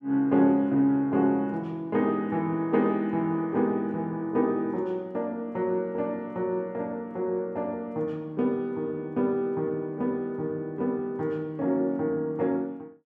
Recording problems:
none

